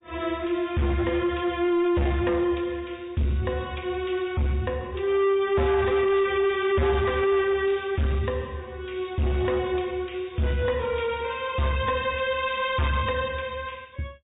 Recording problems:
treble missing; nothing above 3.7 kHz
lossy compression; MP3, log-spectral distance 2 dB
distorted audio; soft clipping, signal-to-distortion ratio 7 dB

